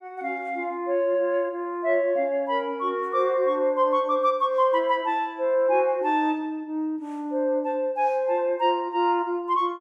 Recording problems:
none

